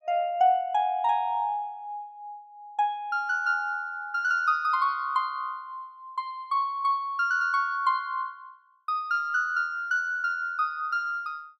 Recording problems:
none

